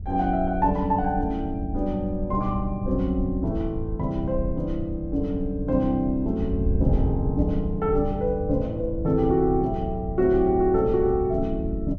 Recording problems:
wind noise; below 82 Hz, SNR 8 dB

